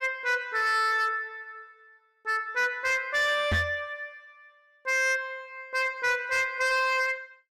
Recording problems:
distorted audio; hard clipping, signal-to-distortion ratio 11 dB
microphone bump; at 3.5 s; peak +3 dB vs average level

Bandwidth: 14.5 kHz